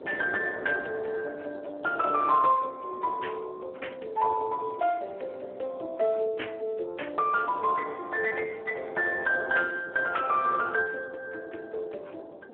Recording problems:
phone line; 370 Hz to 2.8 kHz, Speex
wind on the microphone; below 580 Hz, SNR 18 dB

